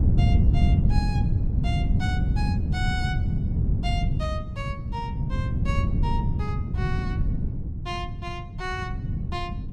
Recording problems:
wind on the microphone; below 150 Hz, SNR -9 dB

